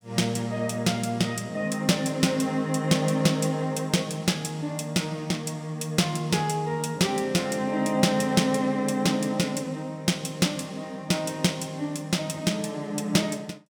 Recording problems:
none

